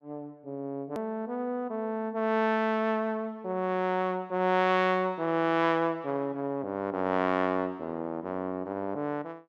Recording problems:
hard cut with a click; at 1 s

